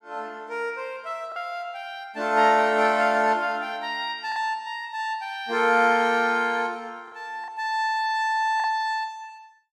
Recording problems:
packet loss; 2% of the sound replaced, filled with the last packet

